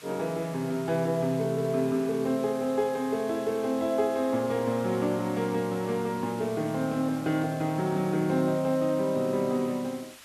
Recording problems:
background hiss; SNR 19 dB

